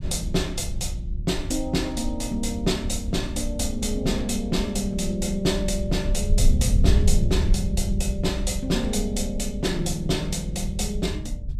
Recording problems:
rumble; below 76 Hz, SNR 2 dB

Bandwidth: 14.5 kHz